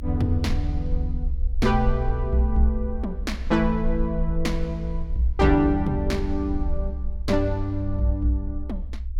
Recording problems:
low-frequency rumble; below 64 Hz, SNR 5 dB

